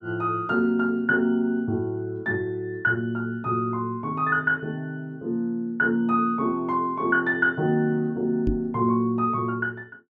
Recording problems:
knock on the microphone; at 8.5 s; peak +1 dB vs average level

